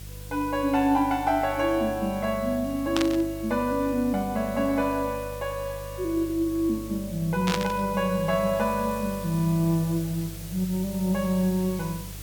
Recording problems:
electrical hum; 50 Hz, harmonics up to 350 Hz, SNR 15 dB
background hiss; SNR 17 dB
burst of static; at 3 s and at 7.5 s; peak +2 dB vs average level

